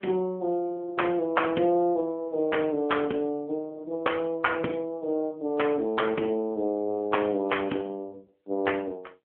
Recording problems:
phone line; 240 Hz to 3.3 kHz, AMR-NB

